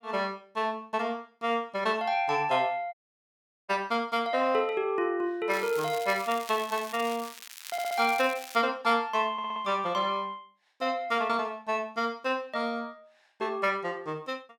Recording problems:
audio cutting out; at 3 s for 1 s
crackling; from 5.5 to 8.5 s; loose cable, SNR 13 dB
audio stuttering; at 7.5 s and at 9.5 s

